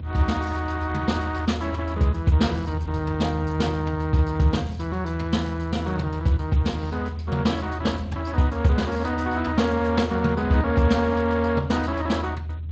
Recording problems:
codec artefacts; Speex, log-spectral distance 3 dB
low-frequency rumble; below 82 Hz, strongest tone 80 Hz, SNR 7 dB

